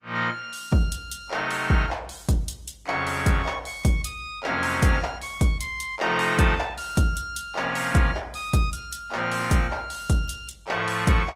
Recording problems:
lossy compression; Opus, log-spectral distance 4 dB

